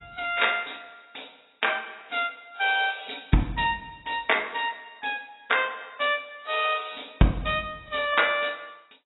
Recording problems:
codec artefacts; AAC, log-spectral distance 10 dB, nothing above 3.8 kHz

